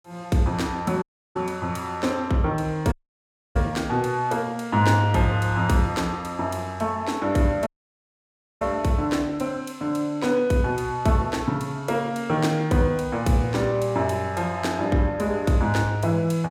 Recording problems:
dropout; at 1 s, at 3 s for 0.5 s and at 7.5 s for 1 s

